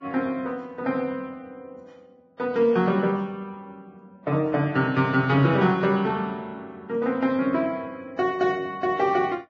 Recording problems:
lossy codec; Vorbis, log-spectral distance 2 dB, nothing above 6 kHz

